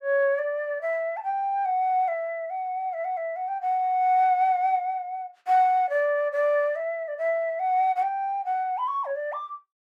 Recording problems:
none

